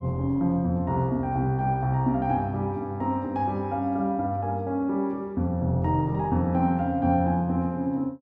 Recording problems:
none

